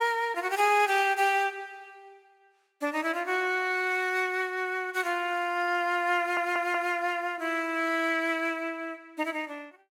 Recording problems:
stutter; at 6 s

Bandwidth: 16.5 kHz